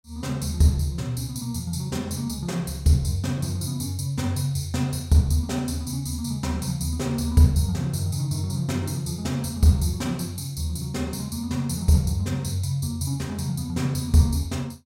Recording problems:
none

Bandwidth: 16 kHz